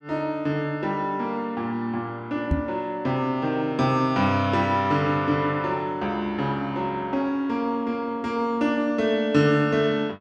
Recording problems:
knock on the microphone; at 2.5 s; peak +4 dB vs average level

